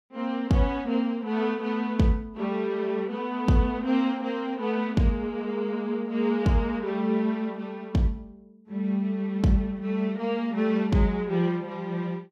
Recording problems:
none

